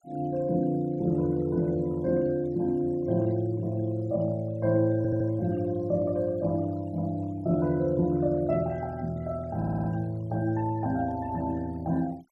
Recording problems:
denoising artefacts; signal-to-artefact ratio 26 dB
stutter; at 5 s and at 9.5 s

